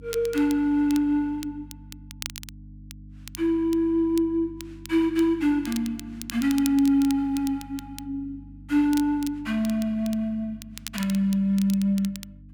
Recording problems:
hum; 50 Hz, harmonics up to 300 Hz, SNR 21 dB
crackle; vinyl, SNR 17 dB

